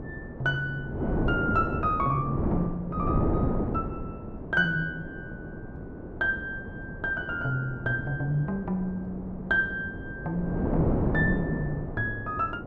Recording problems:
wind on the microphone; below 390 Hz, SNR 3 dB

